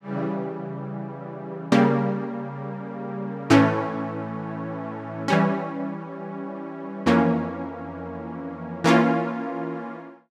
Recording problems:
none

